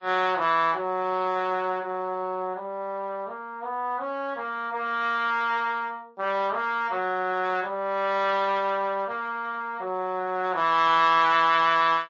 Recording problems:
lossy compression; Speex, then MP3, log-spectral distance 2 dB, nothing above 7.1 kHz

